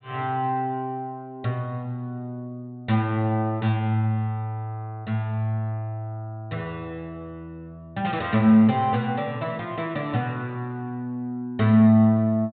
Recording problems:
treble missing; nothing above 4 kHz

